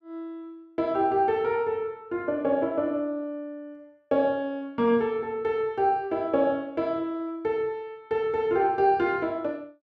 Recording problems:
none

